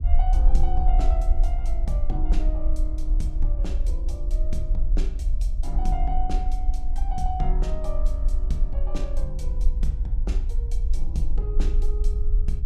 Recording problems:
rumble; below 46 Hz, SNR -9 dB

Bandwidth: 14.5 kHz